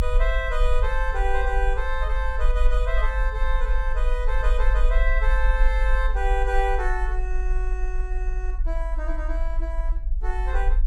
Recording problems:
low-frequency rumble; below 46 Hz, SNR -3 dB

